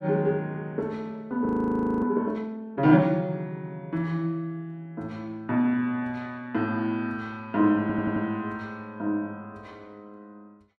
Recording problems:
frozen audio; at 1.5 s for 0.5 s
audio stuttering; at 8 s

